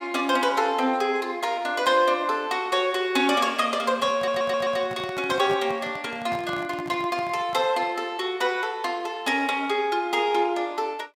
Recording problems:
handling noise; from 4 to 8 s; peak -8 dB vs average level
audio stuttering; at 4 s

